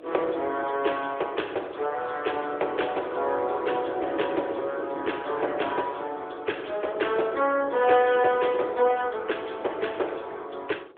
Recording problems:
telephone audio; 300 Hz to 3.5 kHz, AMR-NB
wind noise; below 470 Hz, SNR 13 dB

